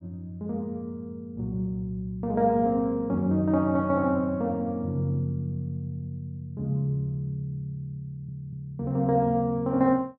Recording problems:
audio stuttering; at 8 s

